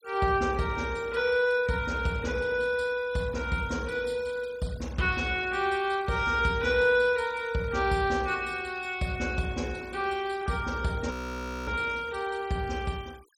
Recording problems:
denoising artefacts; signal-to-artefact ratio 23 dB
audio freezing; at 11 s for 0.5 s

